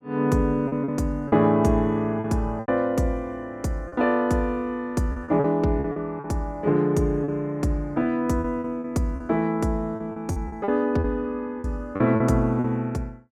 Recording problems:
packet loss; 9% of the sound replaced, filled with repeated pitch periods

